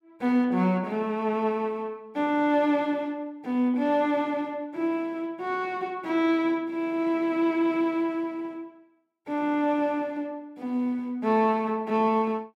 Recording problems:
none

